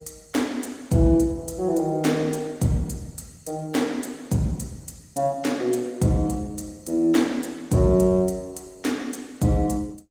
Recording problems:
lossy compression; Opus, log-spectral distance 4 dB, nothing above 19 kHz

